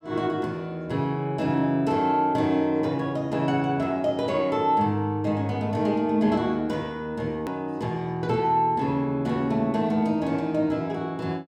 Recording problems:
click at an edit; at 7.5 s

